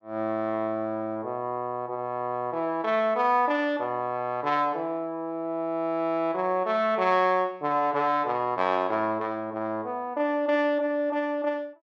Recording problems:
none

